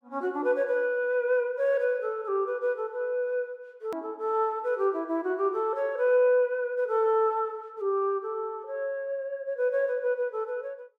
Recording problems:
hard cut with a click; at 4 s

